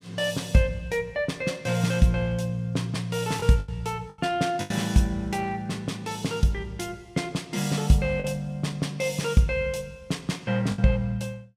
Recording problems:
lost packets; 3% of the sound replaced, filled with the last packet

